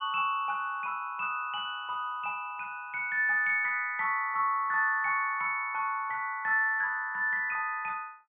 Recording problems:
low-pass filter; nothing above 3.4 kHz

